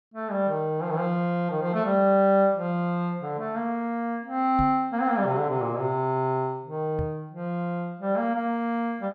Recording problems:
knock on the microphone; at 4.5 s and at 7 s; peak -2 dB vs average level

